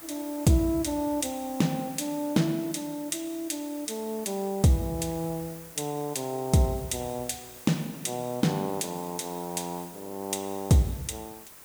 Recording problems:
hiss; slope -2 dB per octave, SNR 16 dB

